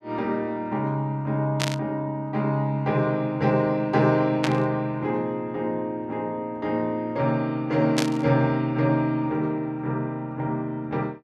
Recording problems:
static burst; at 1.5 s, at 4.5 s and at 8 s; peak +3 dB vs average level

